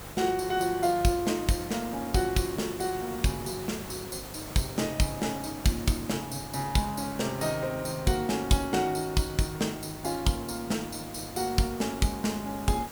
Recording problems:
electrical hum; 50 Hz, harmonics up to 700 Hz, SNR 19 dB
hiss; slope -4 dB per octave, SNR 12 dB

